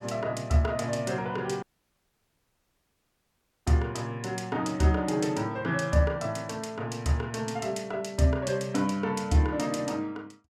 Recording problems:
audio cutting out; at 1.5 s for 2 s

